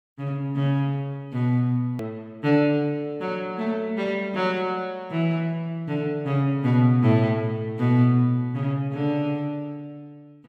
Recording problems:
click at an edit; at 2 s

